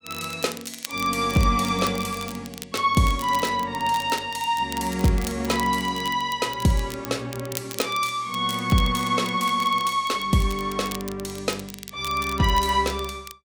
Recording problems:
crackle; vinyl, SNR 15 dB

